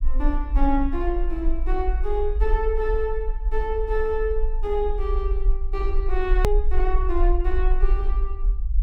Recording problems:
low-frequency rumble; below 44 Hz, strongest tone 22 Hz, SNR -1 dB
edit click; at 6.5 s

